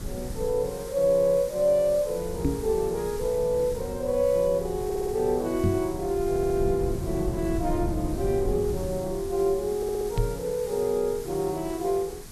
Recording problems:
background hiss; SNR 17 dB
rumble; below 170 Hz, SNR 11 dB
knock on the microphone; at 2.5 s, at 5.5 s and at 10 s; peak +4 dB vs average level
audio stuttering; at 5 s, at 6.5 s and at 10 s

